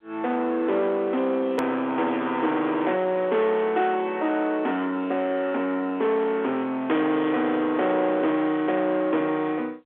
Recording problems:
phone line; 260 Hz to 3.6 kHz, G.711
distorted audio; soft clipping, signal-to-distortion ratio 10 dB
edit click; at 1.5 s

